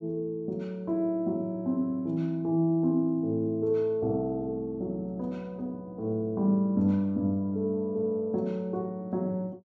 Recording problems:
none

